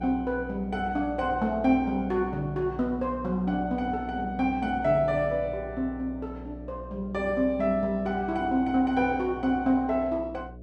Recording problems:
hum; 60 Hz, harmonics up to 660 Hz, SNR 15 dB

